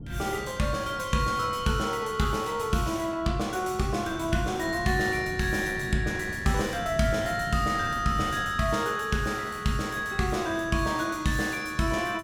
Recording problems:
wind noise; below 230 Hz, SNR 14 dB

